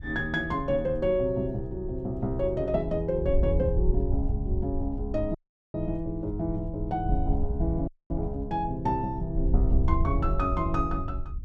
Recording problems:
wind on the microphone; below 74 Hz, SNR 3 dB
dropout; at 5.5 s and at 8 s

